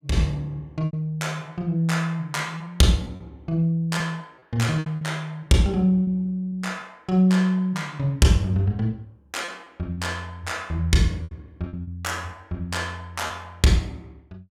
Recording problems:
packet loss; 6% of the sound replaced, filled with repeated pitch periods

